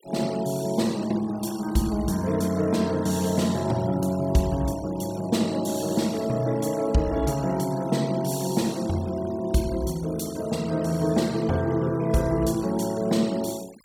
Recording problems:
denoising artefacts; signal-to-artefact ratio 19 dB

